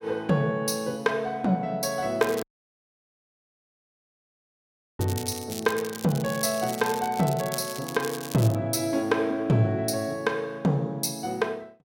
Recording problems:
crackling; at 2 s and from 5 to 8.5 s; loose cable, SNR 12 dB
audio cutting out; at 2.5 s for 2.5 s

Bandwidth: 16.5 kHz